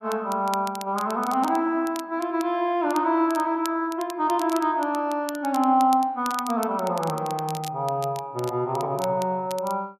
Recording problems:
crackling; vinyl, SNR 17 dB

